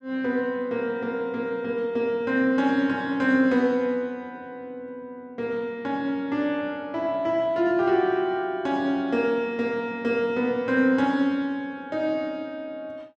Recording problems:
none

